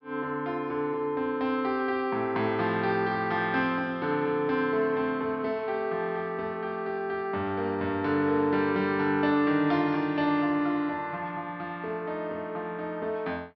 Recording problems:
treble cut off; nothing above 5.5 kHz

